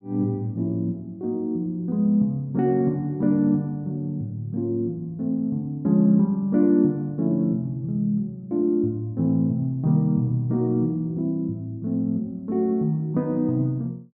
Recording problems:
none

